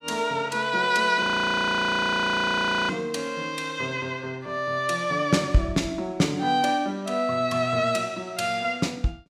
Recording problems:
frozen audio; at 1 s for 1.5 s

